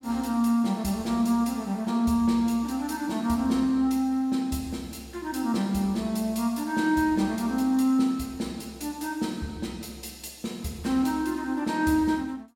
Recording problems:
none

